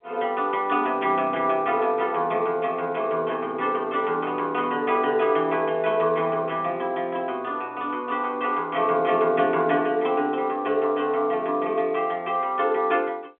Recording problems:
telephone audio; 260 Hz to 3.3 kHz, G.711

